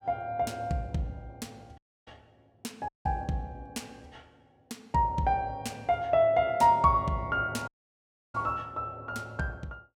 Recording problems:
dropout; at 2 s, at 3 s and at 7.5 s for 0.5 s

